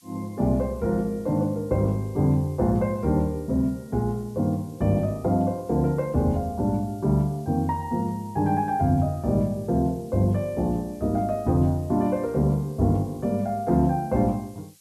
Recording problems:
background hiss; SNR 29 dB

